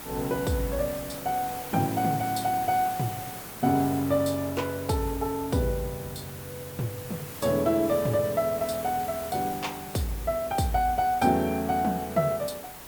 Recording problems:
background hiss; slope -3 dB per octave, SNR 12 dB

